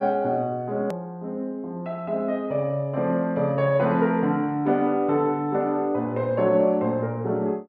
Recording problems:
click at an edit; at 1 s

